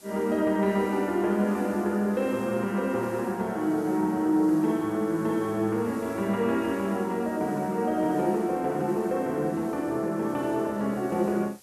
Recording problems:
background hiss; SNR 24 dB

